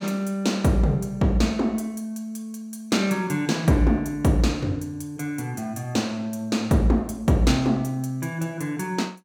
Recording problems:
none

